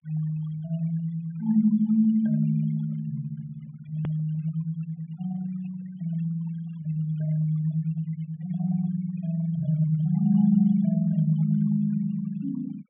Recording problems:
treble missing; nothing above 3.4 kHz
noise reduction artefacts; signal-to-artefact ratio 25 dB
edit click; at 4 s

